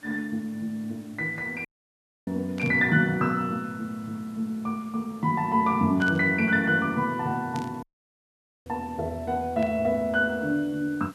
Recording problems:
background hiss; slope -2 dB per octave, SNR 28 dB
dropout; at 1.5 s for 0.5 s and at 8 s for 1 s
static burst; 4 times, first at 2.5 s; peak -11 dB vs average level

